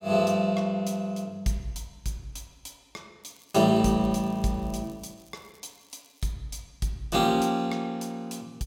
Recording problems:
crackle; from 3 to 6.5 s; loose cable, SNR 30 dB

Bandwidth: 16.5 kHz